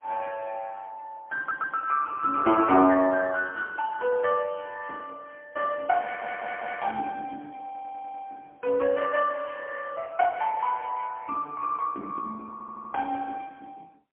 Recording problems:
phone line; 240 Hz to 3 kHz, AMR-NB, then MP3
stutter; 4 times, first at 1.5 s

